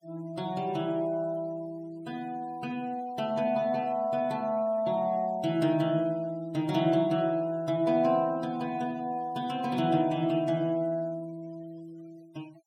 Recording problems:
denoising artefacts; signal-to-artefact ratio 26 dB

